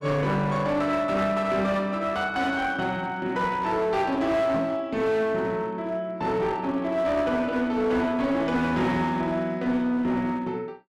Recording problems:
distorted audio; hard clipping, uneven, signal-to-distortion ratio 10 dB
microphone thump; at 4.5 s; peak -2 dB vs average level

